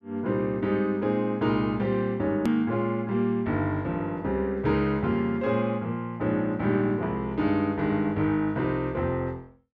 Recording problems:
edit click; at 2.5 s

